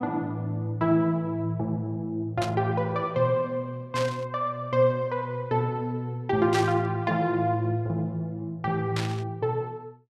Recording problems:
burst of static; 4 times, first at 2.5 s; peak -1 dB vs average level

